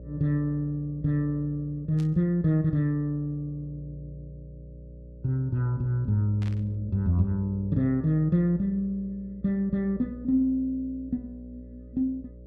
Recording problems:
electrical hum; 60 Hz, harmonics up to 600 Hz, SNR 18 dB
static burst; at 2 s and at 6.5 s; peak -15 dB vs average level

